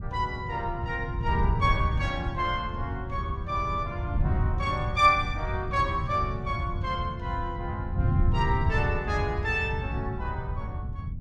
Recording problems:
wind noise; below 120 Hz, SNR 2 dB

